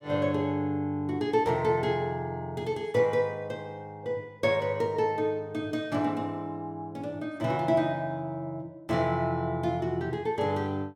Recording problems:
none

